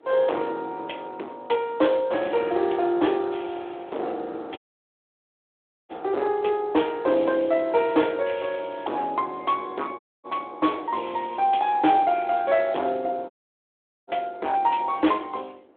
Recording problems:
phone line; 280 Hz to 3.5 kHz, Speex
distorted audio; hard clipping, signal-to-distortion ratio 7 dB
wind on the microphone; below 680 Hz, SNR 23 dB
dropout; at 4.5 s for 1.5 s, at 10 s and at 13 s for 1 s

